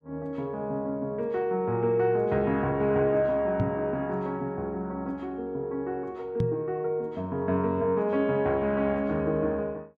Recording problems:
microphone thump; at 3.5 s and at 6.5 s; peak +3 dB vs average level

